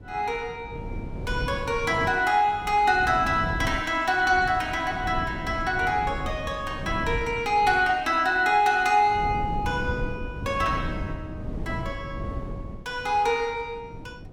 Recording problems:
wind on the microphone; below 230 Hz, SNR 11 dB

